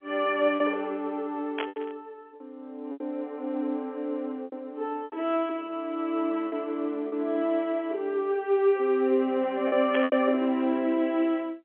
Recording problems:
telephone audio; 220 Hz to 3.5 kHz, G.711
lost packets; 5% of the sound replaced, filled with repeated pitch periods
static burst; at 1.5 s and at 10 s; peak -1 dB vs average level

